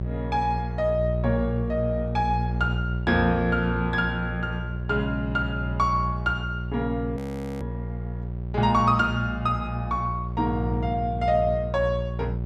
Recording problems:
hum; 60 Hz, harmonics up to 600 Hz, SNR 4 dB
frozen audio; at 7 s

